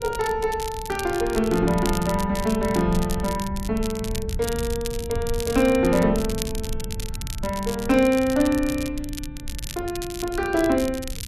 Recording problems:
rumble; below 100 Hz, SNR 11 dB
crackle; vinyl, SNR 13 dB

